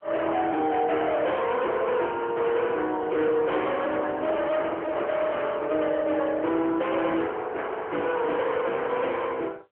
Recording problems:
phone line; 280 Hz to 3.6 kHz, AMR-NB
distortion; hard clipping, signal-to-distortion ratio 9 dB

